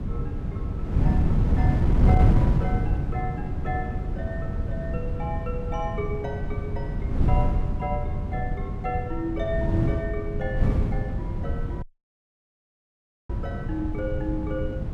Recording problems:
low-frequency rumble; below 130 Hz, SNR 9 dB
wind on the microphone; below 150 Hz, SNR -7 dB
dropout; at 12 s for 1.5 s

